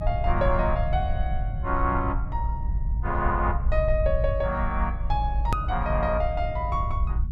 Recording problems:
low-frequency rumble; below 74 Hz, SNR 1 dB
hard cut with a click; at 5.5 s

